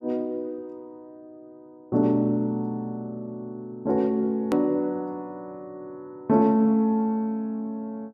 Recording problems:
click at an edit; at 4.5 s

